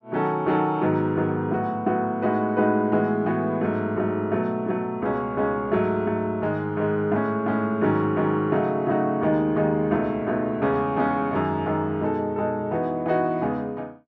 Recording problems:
none

